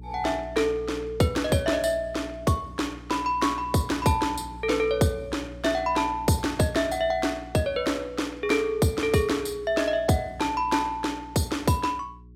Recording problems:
hum; 60 Hz, harmonics up to 420 Hz, SNR 19 dB

